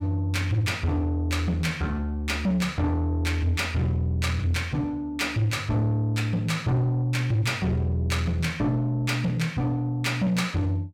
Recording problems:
distorted audio; soft clipping, signal-to-distortion ratio 11 dB

